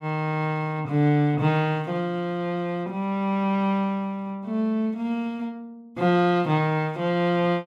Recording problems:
none

